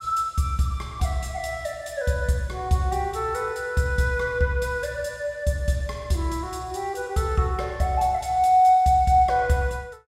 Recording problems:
none

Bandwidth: 16 kHz